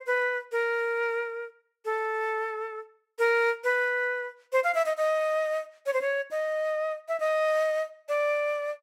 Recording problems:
none

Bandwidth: 16 kHz